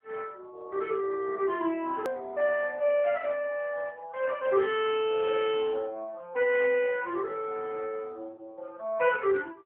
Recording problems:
telephone audio; 280 Hz to 3.4 kHz, AMR-NB
edit click; at 2 s

